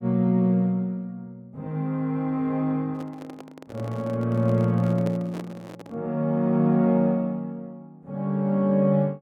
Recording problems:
handling noise; from 3 to 6 s; peak -7 dB vs average level

